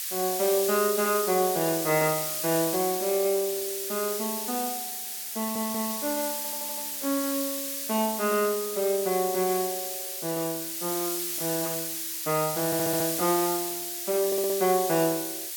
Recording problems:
hiss; SNR 2 dB
stutter; 4 times, first at 5.5 s

